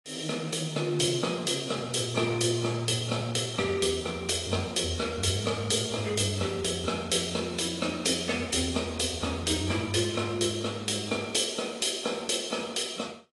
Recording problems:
lossy compression; AAC, log-spectral distance 7 dB, nothing above 11 kHz

